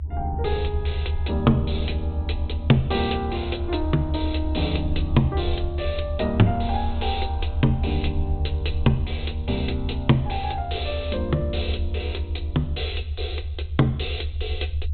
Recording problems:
treble missing; nothing above 4 kHz
rumble; below 78 Hz, strongest tone 78 Hz, SNR 2 dB

